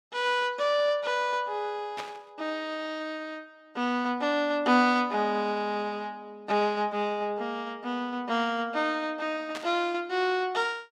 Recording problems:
static burst; at 2 s and at 9.5 s; peak -5 dB vs average level

